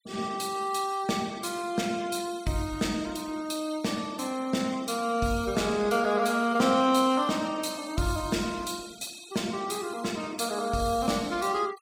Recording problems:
denoising artefacts; signal-to-artefact ratio 21 dB

